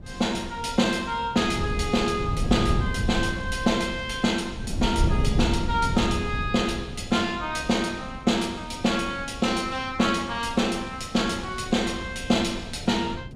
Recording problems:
wind on the microphone; below 160 Hz, SNR 7 dB

